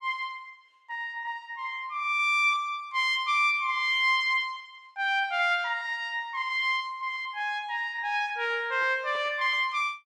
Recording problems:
packet loss; 6% of the sound replaced, filled with repeated pitch periods

